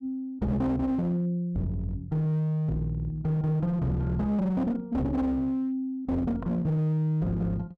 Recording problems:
distorted audio; hard clipping, uneven, signal-to-distortion ratio 10 dB

